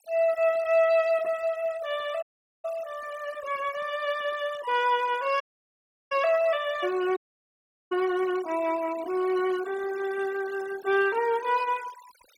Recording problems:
noise reduction artefacts; signal-to-artefact ratio 18 dB
audio cutting out; at 2 s, at 5.5 s for 0.5 s and at 7 s for 0.5 s

